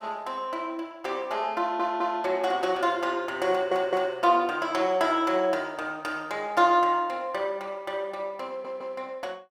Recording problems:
stutter; at 1.5 s, at 3.5 s and at 8.5 s

